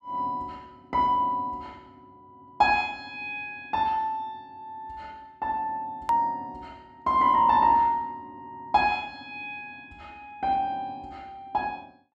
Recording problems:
hard cut with a click; at 6 s

